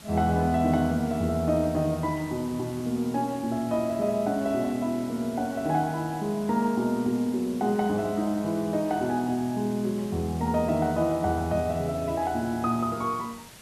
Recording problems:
hiss; slope -1 dB per octave, SNR 19 dB

